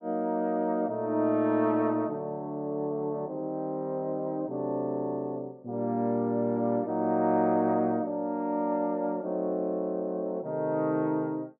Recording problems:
none

